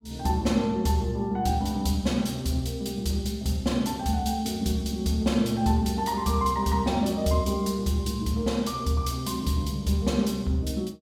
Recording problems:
none

